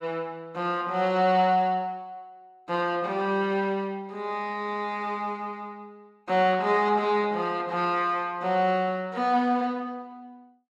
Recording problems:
none

